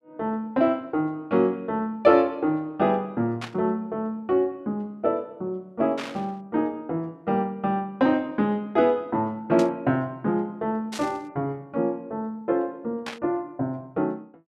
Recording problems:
burst of static; 5 times, first at 3.5 s; peak -4 dB vs average level

